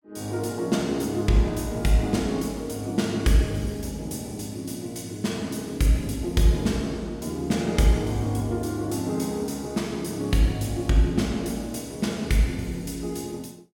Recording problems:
none

